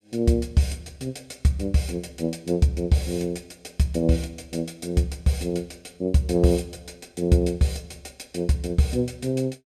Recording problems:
none

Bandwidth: 15 kHz